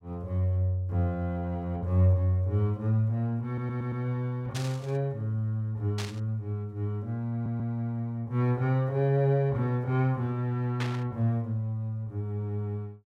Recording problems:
audio stuttering; at 3.5 s and at 7.5 s
static burst; at 4.5 s, at 6 s and at 11 s; peak -2 dB vs average level

